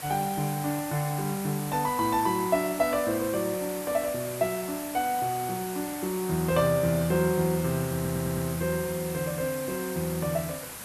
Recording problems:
background hiss; slope -2 dB per octave, SNR 9 dB
stutter; at 8 s

